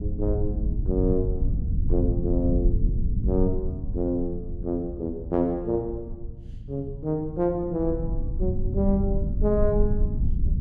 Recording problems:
rumble; below 96 Hz, SNR 1 dB

